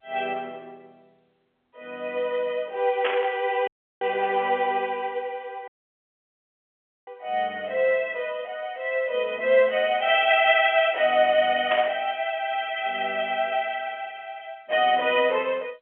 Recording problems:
phone line; 280 Hz to 3.3 kHz, G.711
static burst; at 3 s and at 12 s; peak 0 dB vs average level
dropout; at 3.5 s and at 5.5 s for 1.5 s

